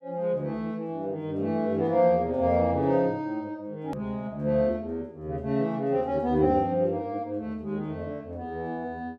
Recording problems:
hard cut with a click; at 4 s

